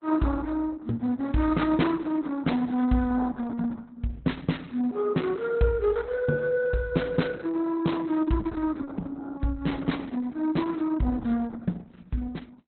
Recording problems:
codec artefacts; Opus, log-spectral distance 3 dB, nothing above 4.1 kHz

